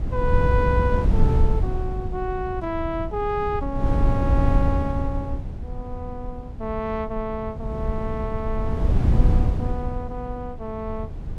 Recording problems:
wind on the microphone; below 110 Hz, SNR -4 dB

